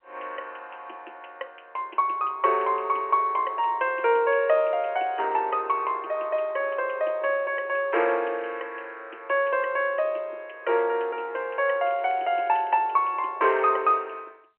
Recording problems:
phone line; 300 Hz to 3.2 kHz, G.711
crackling; at 12 s; loose cable, SNR 29 dB

